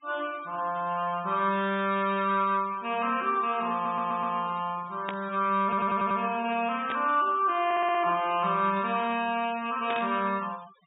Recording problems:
treble missing; nothing above 4 kHz
noise reduction artefacts; signal-to-artefact ratio 20 dB
stutter; at 3.5 s, at 5.5 s and at 7.5 s
static burst; at 5 s, at 7 s and at 10 s; peak -4 dB vs average level

